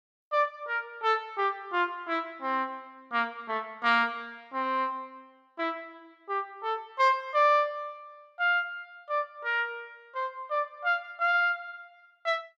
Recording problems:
none

